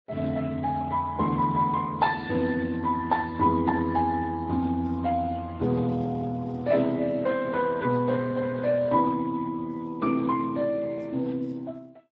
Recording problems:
lossy codec; MP3, then Speex, log-spectral distance 3 dB

